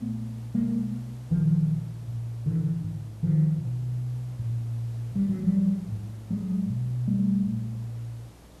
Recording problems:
hum; 60 Hz, harmonics up to 300 Hz, SNR 26 dB
hiss; slope -5 dB per octave, SNR 25 dB

